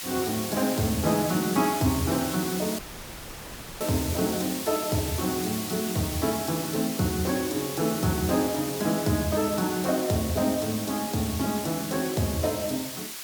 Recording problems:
background hiss; slope +2 dB per octave, SNR 6 dB
audio cutting out; at 3 s for 1 s

